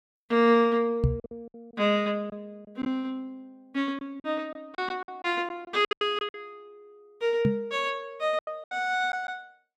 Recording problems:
lost packets; 10% of the sound replaced, filled with silence
microphone bump; at 1 s and at 7.5 s; peak +8 dB vs average level

